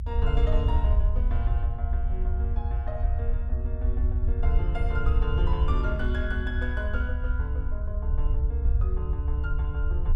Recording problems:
rumble; below 66 Hz, SNR -8 dB

